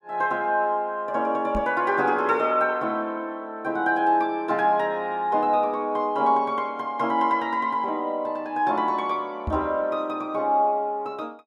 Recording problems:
microphone thump; at 1.5 s and at 9.5 s; peak -2 dB vs average level

